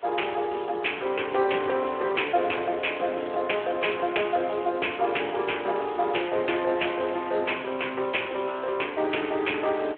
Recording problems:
phone line; 280 Hz to 3.4 kHz, Speex
hiss; SNR 26 dB

